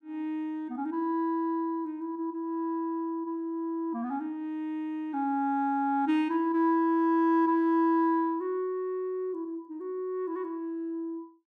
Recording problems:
none

